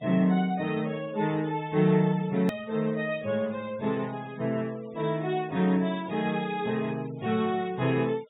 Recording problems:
treble cut off; nothing above 4 kHz
denoising artefacts; signal-to-artefact ratio 23 dB
click at an edit; at 2.5 s

